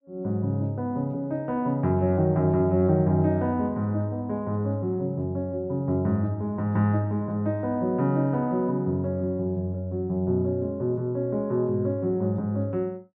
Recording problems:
none

